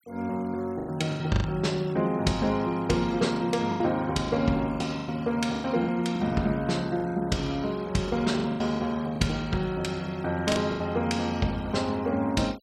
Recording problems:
noise reduction artefacts; signal-to-artefact ratio 23 dB
packet loss; 9% of the sound replaced, filled with the last packet

